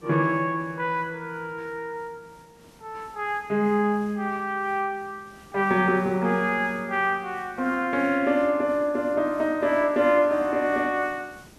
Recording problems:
hiss; slope -4 dB per octave, SNR 27 dB

